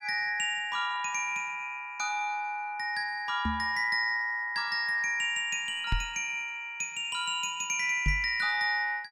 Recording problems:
knock on the microphone; at 3.5 s, at 6 s and at 8 s; peak +3 dB vs average level

